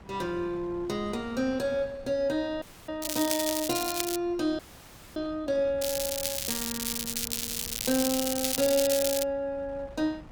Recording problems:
wind on the microphone; below 430 Hz, SNR 19 dB
frozen audio; at 2.5 s and at 4.5 s for 0.5 s
crackle; from 3 to 4 s and from 6 to 9 s; loose cable, SNR 0 dB

